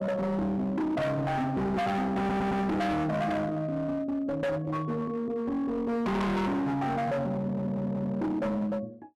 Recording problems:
distorted audio; hard clipping, signal-to-distortion ratio 6 dB
audio stuttering; at 2 s and at 7.5 s

